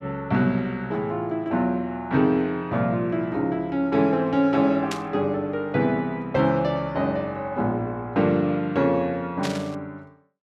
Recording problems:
static burst; at 5 s and at 9.5 s; peak -3 dB vs average level

